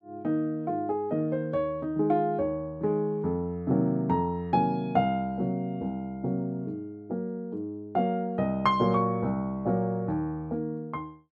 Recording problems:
none

